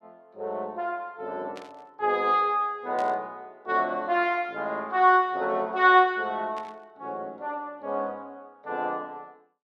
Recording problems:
static burst; at 1.5 s, at 3 s and at 6.5 s; peak -14 dB vs average level

